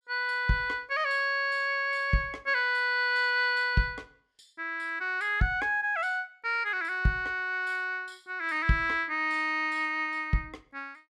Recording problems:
none

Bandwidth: 14 kHz